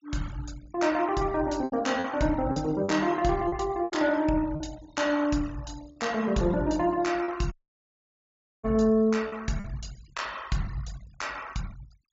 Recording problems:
treble cut off; nothing above 7.3 kHz
denoising artefacts; signal-to-artefact ratio 22 dB
lost packets; 6% of the sound replaced, filled with repeated pitch periods
dropout; at 7.5 s for 1 s

